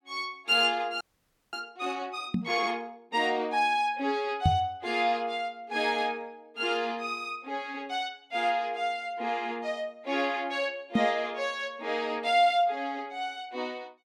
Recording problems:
audio freezing; at 1 s for 0.5 s
microphone bump; at 2.5 s, at 4.5 s and at 11 s; peak +8 dB vs average level

